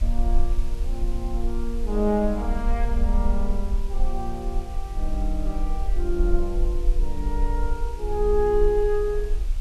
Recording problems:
background hiss; slope -2 dB per octave, SNR 20 dB
low-frequency rumble; below 44 Hz, SNR 0 dB

